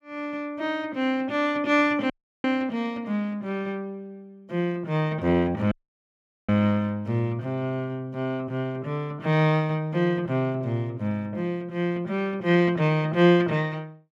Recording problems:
dropout; at 2 s and at 5.5 s for 1 s

